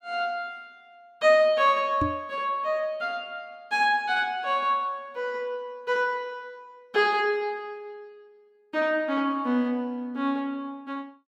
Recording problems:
microphone thump; at 2 s; peak +1 dB vs average level

